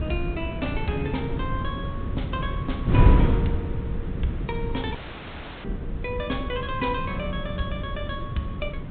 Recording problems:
treble cut off; nothing above 4 kHz
wind noise; below 170 Hz, SNR -3 dB
audio cutting out; at 5 s for 0.5 s

